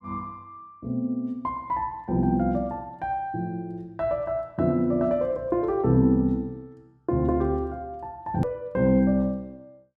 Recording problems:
edit click; at 8.5 s

